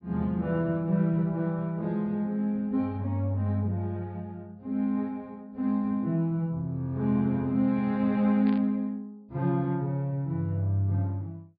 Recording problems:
treble cut off; nothing above 5 kHz
burst of static; at 8.5 s; peak -13 dB vs average level

